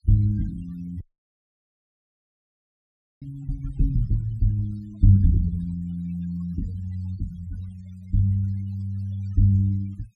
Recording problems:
noise reduction artefacts; signal-to-artefact ratio 26 dB
audio cutting out; at 1 s for 2 s

